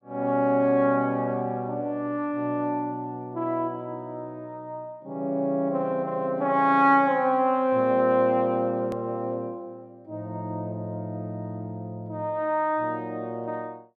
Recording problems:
click at an edit; at 9 s

